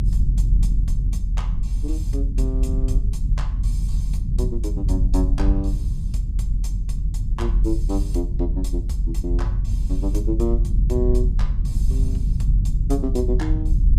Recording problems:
low-frequency rumble; below 68 Hz, strongest tone 42 Hz, SNR -7 dB

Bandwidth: 15.5 kHz